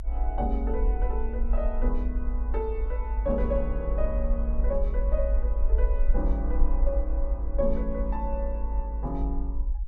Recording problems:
low-frequency rumble; below 52 Hz, SNR -4 dB

